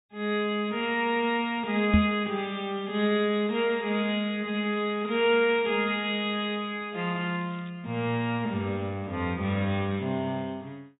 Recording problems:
treble missing; nothing above 4 kHz
microphone bump; at 2 s; peak +9 dB vs average level
crackle; from 3.5 to 6.5 s and at 7 s; loose cable, SNR 27 dB

